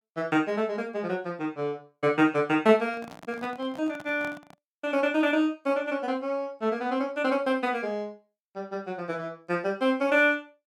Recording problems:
handling noise; from 3 to 4.5 s; peak -10 dB vs average level

